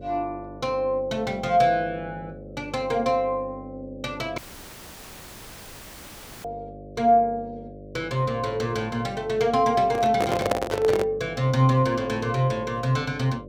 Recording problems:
hum; 50 Hz, harmonics up to 600 Hz, SNR 17 dB
audio cutting out; at 4.5 s for 2 s
microphone handling noise; from 10 to 11 s; peak +4 dB vs average level

